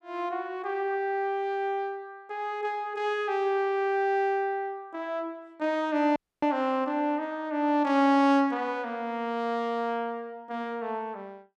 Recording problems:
audio cutting out; at 6 s

